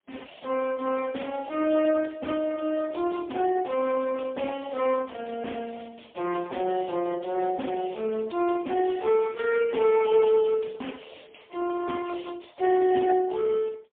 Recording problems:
telephone audio; 220 Hz to 3.4 kHz, AMR-NB, then MP3

